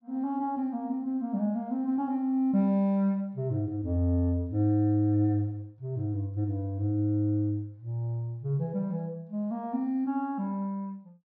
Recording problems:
none

